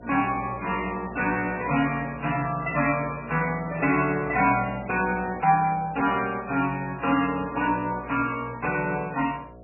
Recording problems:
lossy codec; MP3, log-spectral distance 4 dB, nothing above 2.7 kHz
electrical hum; 60 Hz, harmonics up to 720 Hz, SNR 18 dB

